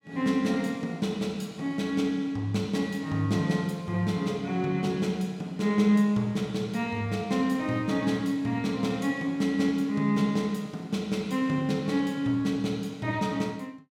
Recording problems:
none

